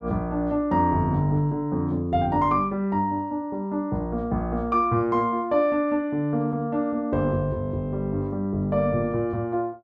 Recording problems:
none

